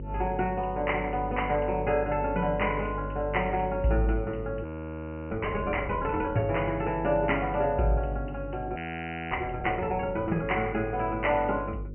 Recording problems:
treble cut off; nothing above 3 kHz
electrical hum; 50 Hz, harmonics up to 550 Hz, SNR 10 dB
frozen audio; at 4.5 s for 0.5 s and at 9 s for 0.5 s

